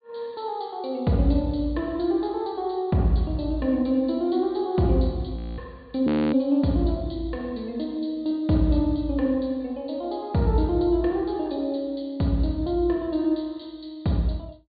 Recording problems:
treble missing; nothing above 4.7 kHz
audio freezing; at 5.5 s and at 6 s

